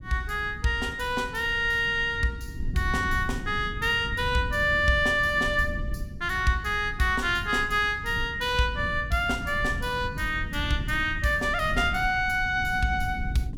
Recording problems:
rumble; below 130 Hz, SNR 11 dB

